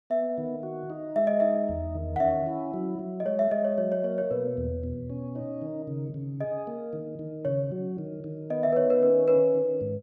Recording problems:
none

